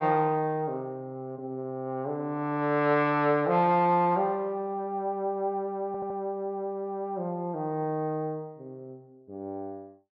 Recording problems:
stutter; at 6 s

